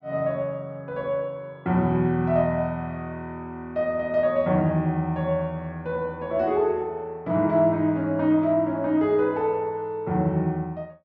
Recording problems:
none

